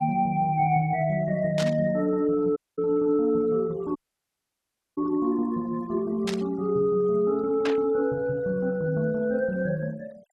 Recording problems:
denoising artefacts; signal-to-artefact ratio 27 dB
burst of static; at 1.5 s, at 6.5 s and at 7.5 s; peak -2 dB vs average level
audio cutting out; at 2.5 s and at 4 s for 1 s

